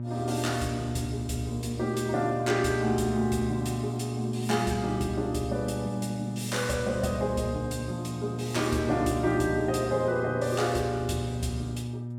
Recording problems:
hum; 60 Hz, harmonics up to 600 Hz, SNR 5 dB

